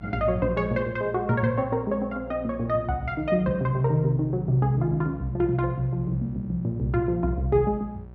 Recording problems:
mains hum; 60 Hz, harmonics up to 960 Hz, SNR 17 dB

